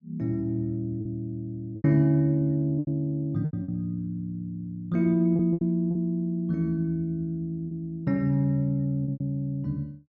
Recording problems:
low-pass filter; nothing above 8 kHz
lost packets; 7% of the sound replaced, filled with repeated pitch periods

